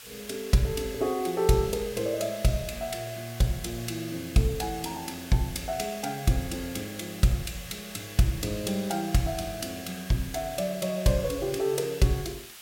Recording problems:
background hiss; SNR 14 dB

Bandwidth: 16.5 kHz